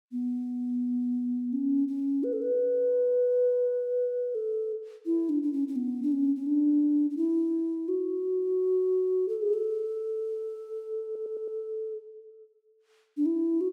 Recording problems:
stutter; at 11 s

